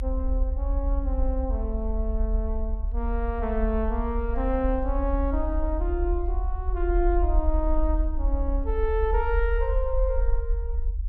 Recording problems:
rumble; below 60 Hz, strongest tone 40 Hz, SNR -2 dB

